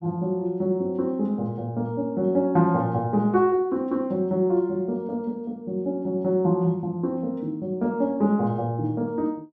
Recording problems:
none

